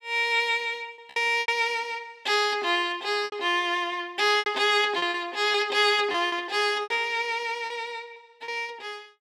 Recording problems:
lost packets; 8% of the sound replaced, filled with repeated pitch periods

